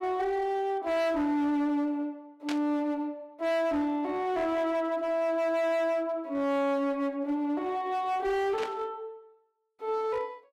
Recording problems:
distorted audio; hard clipping, signal-to-distortion ratio 11 dB
burst of static; at 2.5 s and at 8.5 s; peak -3 dB vs average level

